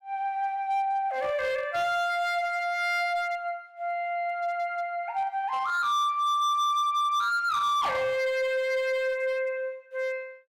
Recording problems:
distorted audio; hard clipping, signal-to-distortion ratio 10 dB

